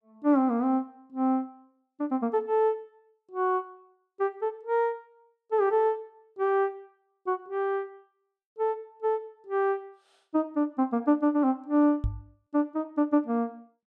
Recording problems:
microphone thump; at 12 s; peak +1 dB vs average level

